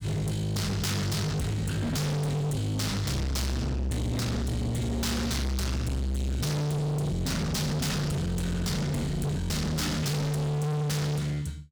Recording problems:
distortion; hard clipping, uneven, signal-to-distortion ratio 6 dB

